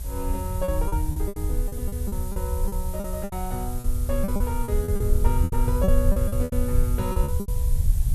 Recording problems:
hiss; SNR 9 dB
rumble; below 76 Hz, SNR -4 dB
lost packets; 15% of the sound replaced, filled with repeated pitch periods

